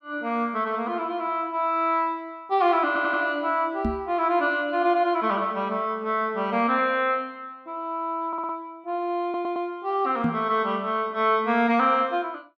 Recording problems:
stutter; at 3 s, at 8.5 s and at 9 s
microphone bump; at 4 s and at 10 s; peak +2 dB vs average level

